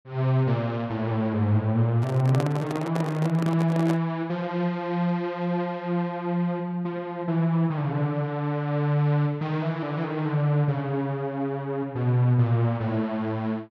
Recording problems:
microphone handling noise; from 2 to 4 s; peak -1 dB vs average level

